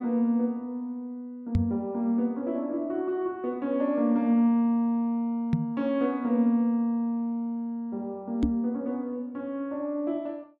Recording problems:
microphone thump; at 1.5 s, at 5.5 s and at 8.5 s; peak +6 dB vs average level

